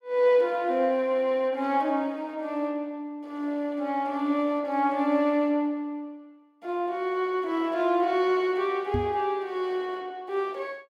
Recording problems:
microphone bump; at 9 s; peak 0 dB vs average level

